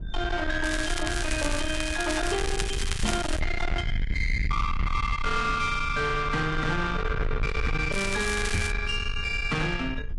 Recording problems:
lossy codec; Vorbis, log-spectral distance 4 dB, nothing above 10.1 kHz
distorted audio; soft clipping, signal-to-distortion ratio 7 dB
low-frequency rumble; below 130 Hz, SNR 5 dB
crackle; from 0.5 to 3.5 s and at 8 s; loose cable, SNR 7 dB
knock on the microphone; at 3 s and at 8.5 s; peak +4 dB vs average level

